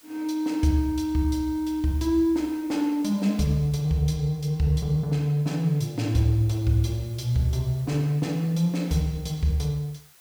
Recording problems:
background hiss; slope +1 dB per octave, SNR 26 dB

